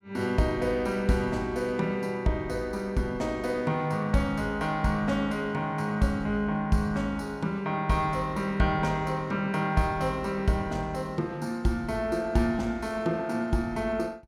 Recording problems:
none

